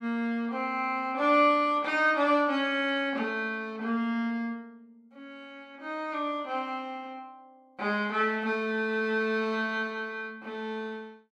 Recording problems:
none

